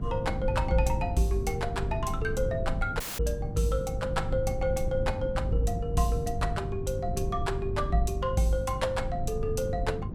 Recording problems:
mains hum; 50 Hz, harmonics up to 600 Hz, SNR 8 dB
rumble; below 130 Hz, SNR 5 dB
audio cutting out; at 3 s

